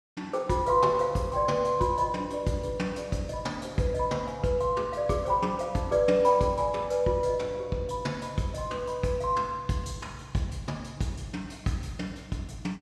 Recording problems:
none

